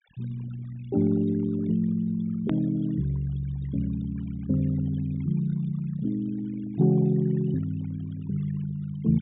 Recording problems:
low-pass filter; nothing above 4 kHz
denoising artefacts; signal-to-artefact ratio 22 dB
click at an edit; at 2.5 s

